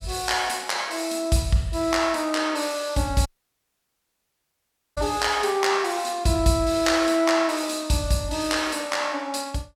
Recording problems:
dropout; at 3.5 s for 1.5 s

